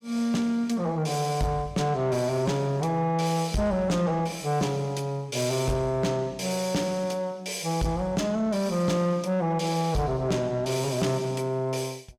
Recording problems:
distorted audio; soft clipping, signal-to-distortion ratio 12 dB

